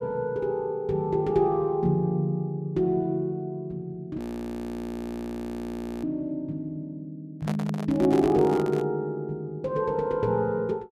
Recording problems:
audio freezing; at 4 s for 2 s
microphone handling noise; from 7.5 to 9 s; peak -3 dB vs average level

